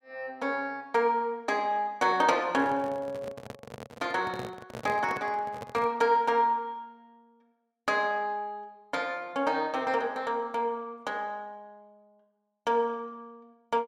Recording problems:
microphone handling noise; from 2.5 to 6 s; peak -5 dB vs average level

